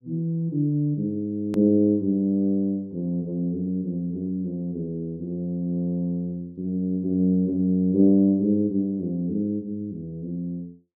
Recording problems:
hard cut with a click; at 1.5 s

